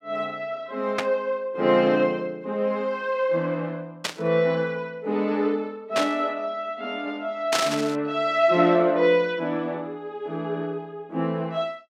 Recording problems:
burst of static; 4 times, first at 1 s; peak +5 dB vs average level

